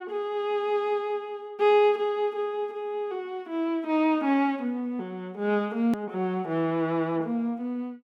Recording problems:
click at an edit; at 6 s

